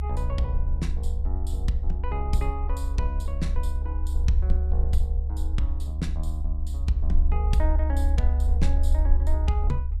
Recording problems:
rumble; below 70 Hz, SNR -6 dB

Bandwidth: 14 kHz